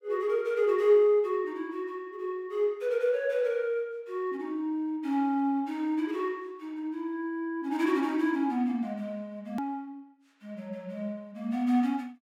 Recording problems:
click at an edit; at 9.5 s

